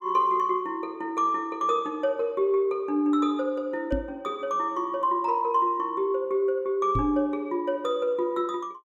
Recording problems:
microphone bump; at 4 s and at 7 s; peak +1 dB vs average level

